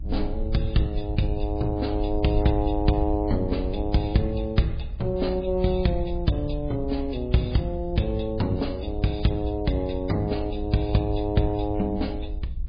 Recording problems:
lossy compression; MP3, log-spectral distance 3 dB, nothing above 4.6 kHz
rumble; below 66 Hz, SNR 7 dB

